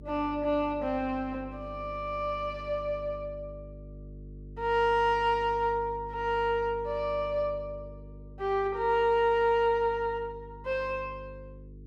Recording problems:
hum; 50 Hz, harmonics up to 450 Hz, SNR 17 dB

